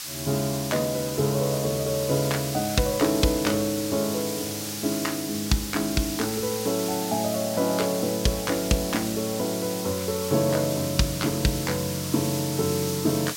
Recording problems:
hiss; slope +4 dB per octave, SNR 6 dB

